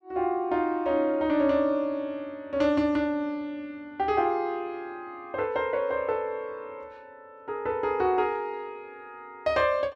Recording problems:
none

